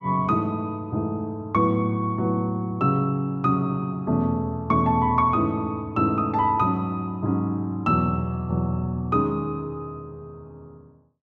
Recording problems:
none

